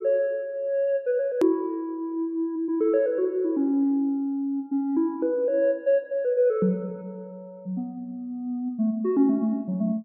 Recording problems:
hard cut with a click; at 1.5 s

